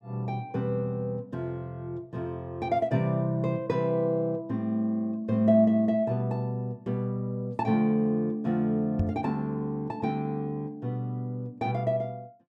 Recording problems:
knock on the microphone; at 9 s; peak +5 dB vs average level

